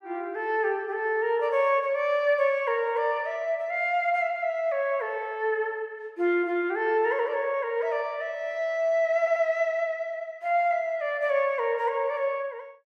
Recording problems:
stutter; at 9 s

